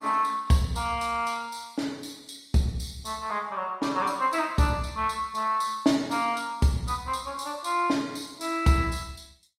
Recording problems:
lossy compression; Opus, log-spectral distance 4 dB, nothing above 16 kHz

